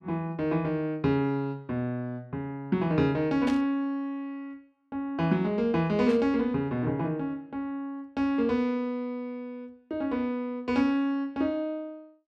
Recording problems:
static burst; at 3.5 s and at 6 s; peak -8 dB vs average level

